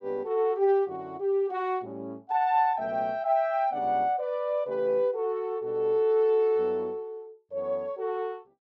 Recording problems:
none

